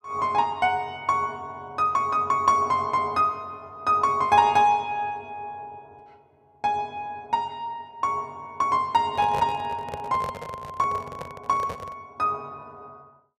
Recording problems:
handling noise; from 9 to 12 s; peak -4 dB vs average level

